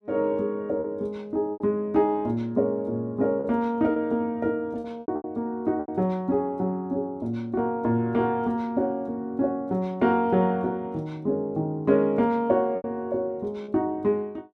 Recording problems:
packet loss; 4% of the sound replaced, filled with repeated pitch periods

